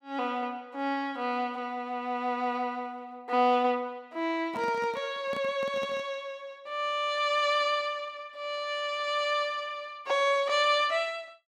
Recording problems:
handling noise; from 4.5 to 6 s; peak -8 dB vs average level

